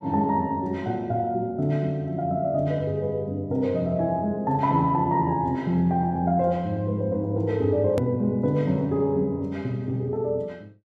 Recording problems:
click at an edit; at 8 s

